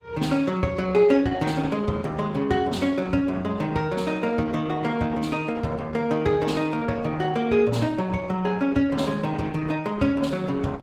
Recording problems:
codec artefacts; Opus, log-spectral distance 3 dB, nothing above 18.5 kHz

